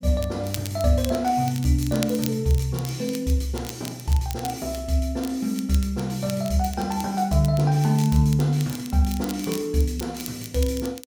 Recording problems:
crackle; vinyl, SNR 15 dB

